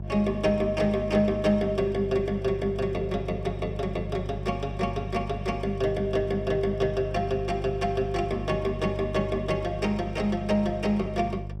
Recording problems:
electrical hum; 50 Hz, harmonics up to 600 Hz, SNR 8 dB

